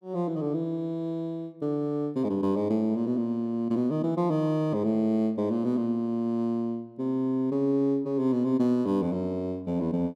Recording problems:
none

